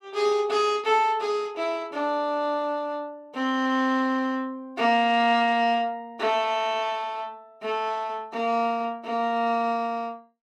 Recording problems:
none

